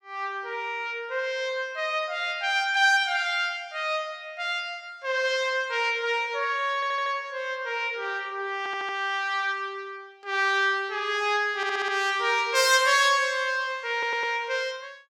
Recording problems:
stutter; 4 times, first at 6.5 s

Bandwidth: 17.5 kHz